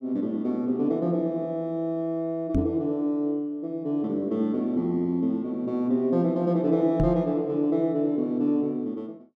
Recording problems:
microphone thump; at 2.5 s and at 7 s; peak +5 dB vs average level

